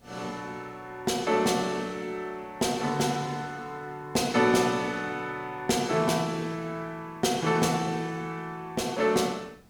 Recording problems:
background hiss; slope -6 dB per octave, SNR 29 dB

